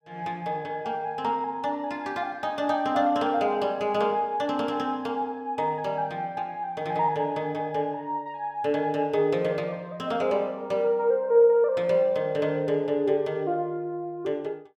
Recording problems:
none

